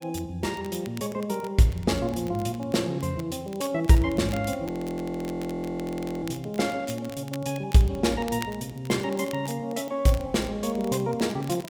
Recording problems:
crackle; vinyl, SNR 20 dB
frozen audio; at 4.5 s for 1.5 s

